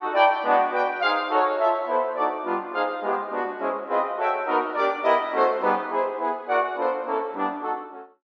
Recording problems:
none

